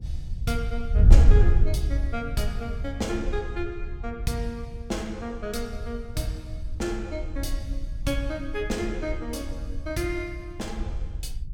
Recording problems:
wind on the microphone; below 74 Hz, SNR -4 dB

